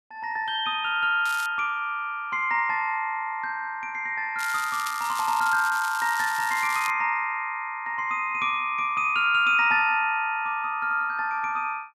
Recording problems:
crackle; at 1.5 s and from 4.5 to 7 s; loose cable, SNR 13 dB

